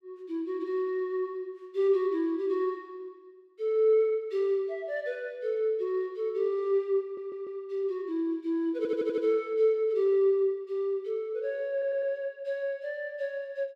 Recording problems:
stutter; at 7 s, at 9 s and at 12 s

